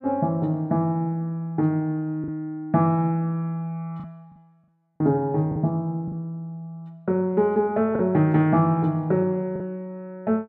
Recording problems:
lost packets; 3% of the sound replaced, filled with the last packet

